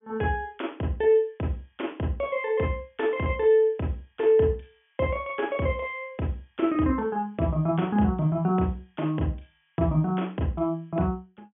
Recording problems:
treble cut off; nothing above 3.4 kHz

